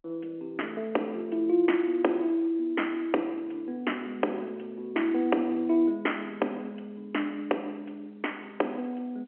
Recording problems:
telephone audio; 260 Hz to 3.1 kHz, G.711

